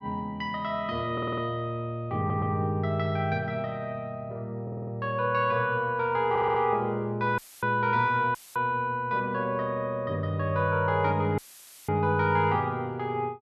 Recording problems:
stutter; 4 times, first at 1 s
audio cutting out; at 7.5 s, at 8.5 s and at 11 s for 0.5 s; filled with static

